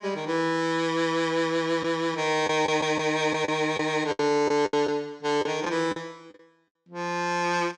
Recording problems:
packet loss; 6% of the sound replaced, filled with the last packet

